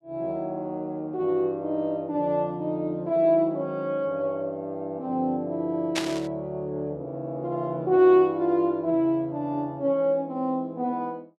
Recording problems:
static burst; at 6 s; peak +2 dB vs average level

